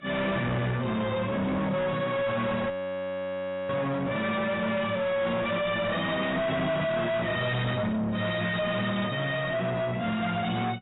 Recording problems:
codec artefacts; AAC, log-spectral distance 4 dB, nothing above 3.8 kHz
distorted audio; soft clipping, signal-to-distortion ratio 6 dB
frozen audio; at 2.5 s for 1 s

